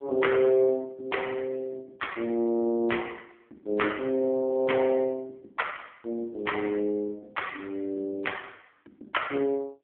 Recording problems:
telephone audio; 190 Hz to 3.4 kHz, AMR-NB

